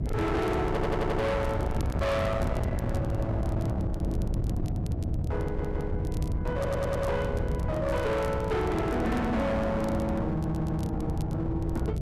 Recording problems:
distortion; hard clipping, signal-to-distortion ratio 7 dB
hum; 60 Hz, harmonics up to 720 Hz, SNR 14 dB
wind on the microphone; below 220 Hz, SNR 2 dB
crackling; vinyl, SNR 24 dB
audio stuttering; 4 times, first at 0.5 s

